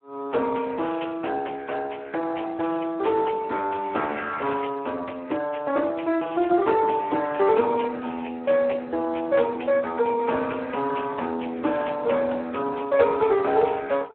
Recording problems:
telephone audio; 240 Hz to 2.8 kHz, Speex

